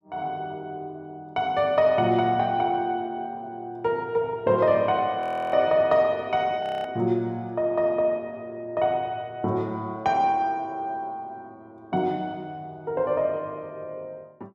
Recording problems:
frozen audio; at 5 s and at 6.5 s

